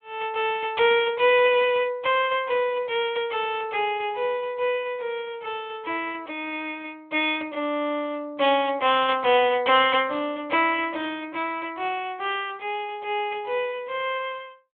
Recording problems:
phone line; 280 Hz to 3.4 kHz, Speex

